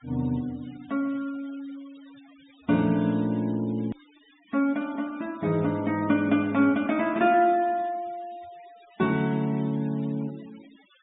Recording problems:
treble cut off; nothing above 4 kHz
noise reduction artefacts; signal-to-artefact ratio 25 dB
click at an edit; at 4 s

